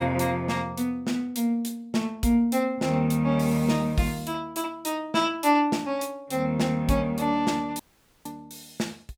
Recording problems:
dropout; at 8 s

